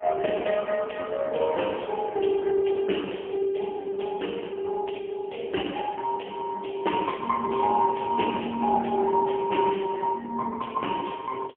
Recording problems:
phone line; 220 Hz to 3.1 kHz, AMR-NB, then MP3

